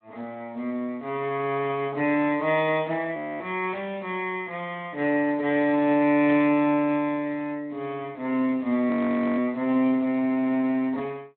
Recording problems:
phone line; 190 Hz to 3.9 kHz, Speex
audio freezing; at 3 s and at 9 s
burst of static; at 6.5 s; peak -11 dB vs average level

